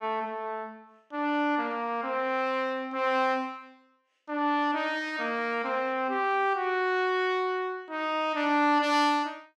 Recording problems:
none

